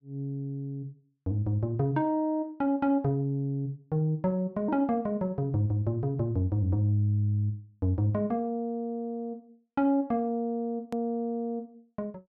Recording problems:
hard cut with a click; at 11 s

